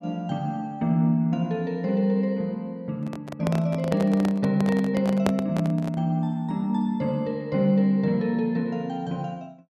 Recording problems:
handling noise; from 3 to 6 s; peak +3 dB vs average level

